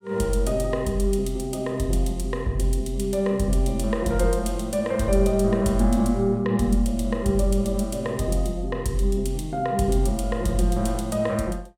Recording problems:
none

